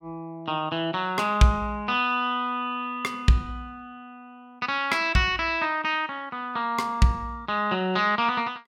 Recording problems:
none

